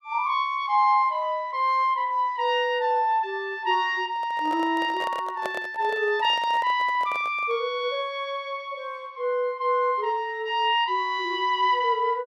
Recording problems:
handling noise; from 4 to 7.5 s; peak -3 dB vs average level

